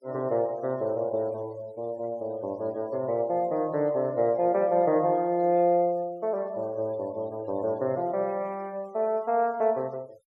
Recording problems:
noise reduction artefacts; signal-to-artefact ratio 28 dB

